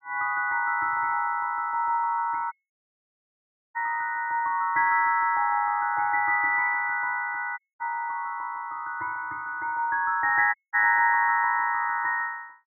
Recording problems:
dropout; at 2.5 s for 1 s, at 7.5 s and at 11 s

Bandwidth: 2 kHz